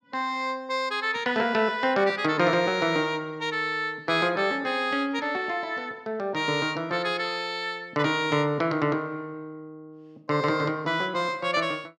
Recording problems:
none

